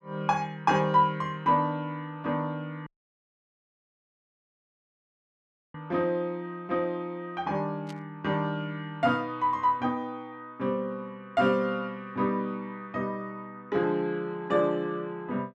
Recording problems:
audio cutting out; at 3 s for 3 s
static burst; at 8 s; peak -13 dB vs average level

